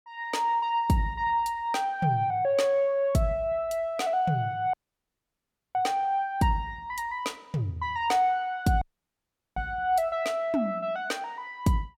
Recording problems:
audio cutting out; at 4.5 s for 1 s and at 9 s for 0.5 s

